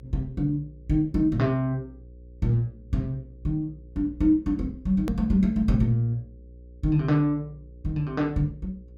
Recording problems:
mains hum; 60 Hz, harmonics up to 540 Hz, SNR 22 dB
click at an edit; at 5 s

